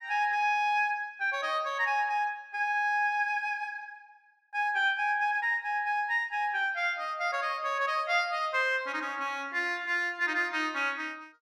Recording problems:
none

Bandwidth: 14.5 kHz